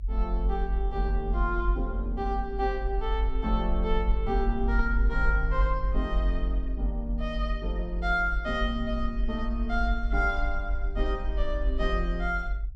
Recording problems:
rumble; below 50 Hz, strongest tone 46 Hz, SNR -1 dB

